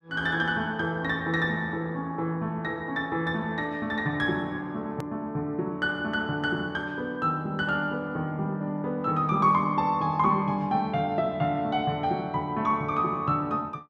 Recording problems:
hard cut with a click; at 5 s

